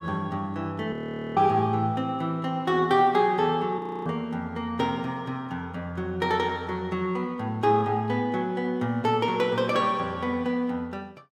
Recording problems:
audio freezing; at 1 s and at 4 s

